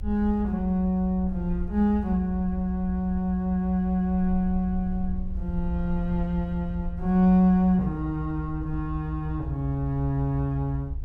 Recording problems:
low-frequency rumble; below 72 Hz, SNR 9 dB

